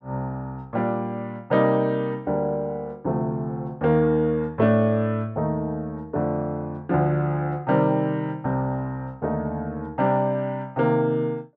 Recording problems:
none

